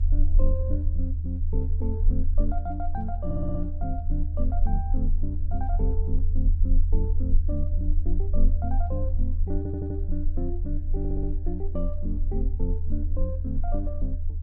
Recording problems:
rumble; below 78 Hz, strongest tone 22 Hz, SNR -7 dB
audio stuttering; at 3.5 s, at 9.5 s and at 11 s

